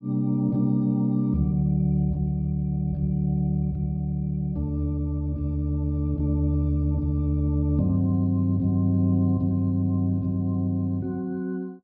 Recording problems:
low-pass filter; nothing above 5.5 kHz

